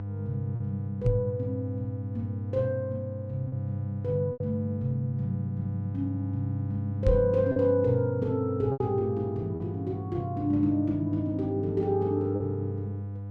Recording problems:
hum; 50 Hz, harmonics up to 700 Hz, SNR 5 dB
lost packets; 3% of the sound replaced, filled with repeated pitch periods
knock on the microphone; at 1 s and at 7 s; peak +7 dB vs average level

